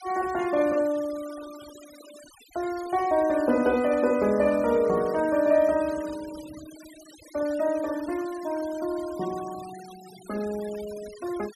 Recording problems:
noise reduction artefacts; signal-to-artefact ratio 20 dB

